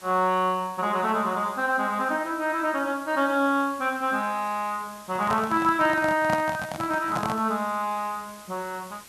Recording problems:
background hiss; slope 0 dB per octave, SNR 21 dB
microphone handling noise; from 5 to 7.5 s; peak 0 dB vs average level

